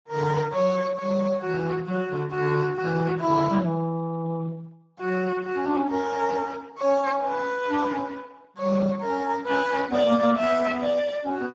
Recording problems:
codec artefacts; Speex, log-spectral distance 4 dB

